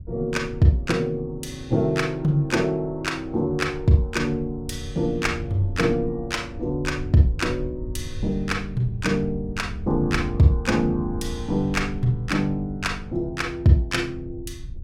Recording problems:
low-frequency rumble; below 96 Hz, SNR 13 dB

